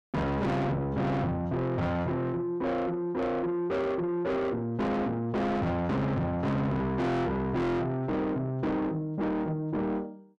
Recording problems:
distortion; soft clipping, signal-to-distortion ratio 6 dB

